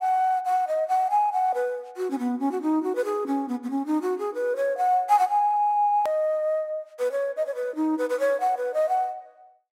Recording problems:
hard cut with a click; at 6 s

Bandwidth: 16 kHz